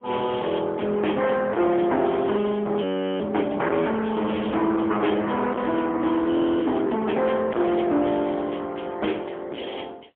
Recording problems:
telephone audio; 240 Hz to 3.4 kHz, AMR-NB, then MP3
distortion; hard clipping, signal-to-distortion ratio 8 dB
audio freezing; at 3 s and at 6.5 s

